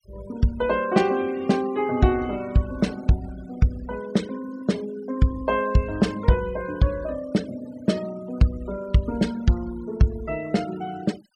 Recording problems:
noise reduction artefacts; signal-to-artefact ratio 20 dB

